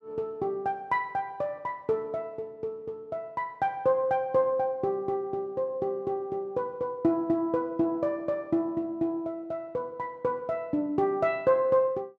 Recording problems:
none

